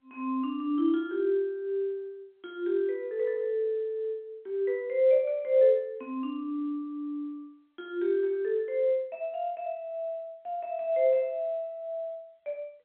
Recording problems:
phone line; 260 Hz to 3.6 kHz, G.711

